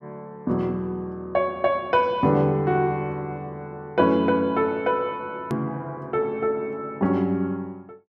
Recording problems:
hard cut with a click; at 5.5 s

